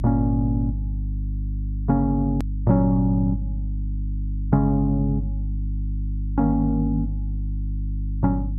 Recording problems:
hum; 50 Hz, harmonics up to 300 Hz, SNR 5 dB
click at an edit; at 2.5 s

